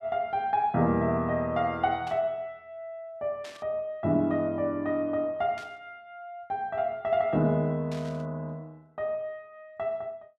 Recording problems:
burst of static; 4 times, first at 2 s; peak -12 dB vs average level

